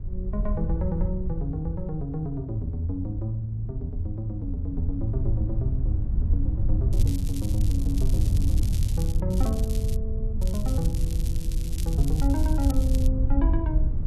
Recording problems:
wind noise; below 80 Hz, SNR -4 dB
crackle; from 7 to 9 s, at 9.5 s and from 10 to 13 s; loose cable, SNR 11 dB

